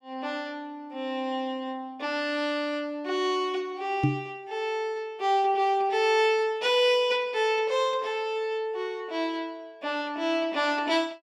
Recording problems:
microphone thump; at 4 s; peak +7 dB vs average level

